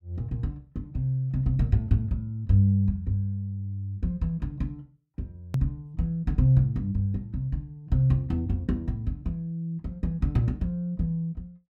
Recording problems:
edit click; at 5.5 s

